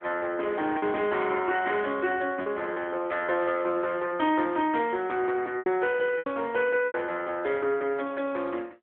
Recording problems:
telephone audio; 280 Hz to 3.4 kHz, AMR-NB
packet loss; 4% of the sound replaced, filled with repeated pitch periods

